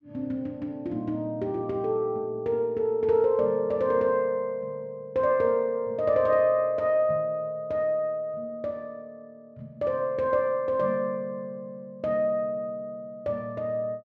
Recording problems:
none

